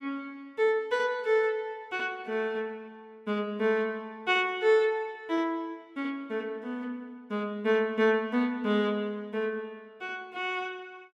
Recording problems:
none

